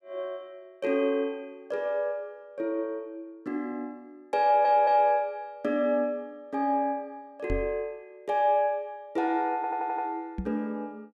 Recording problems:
audio stuttering; at 4.5 s and at 9.5 s
microphone bump; at 7.5 s and at 10 s; peak -1 dB vs average level

